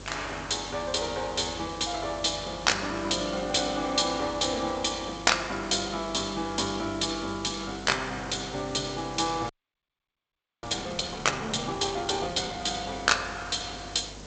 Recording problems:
lossy compression; G.722, log-spectral distance 14 dB, nothing above 7.8 kHz
hum; 50 Hz, harmonics up to 600 Hz, SNR 19 dB
hiss; SNR 15 dB
audio freezing; at 9.5 s for 1 s

